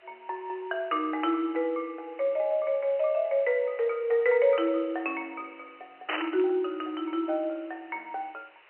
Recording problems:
telephone audio; 320 Hz to 3.1 kHz, G.711
background hiss; SNR 27 dB
static burst; at 6 s; peak +1 dB vs average level

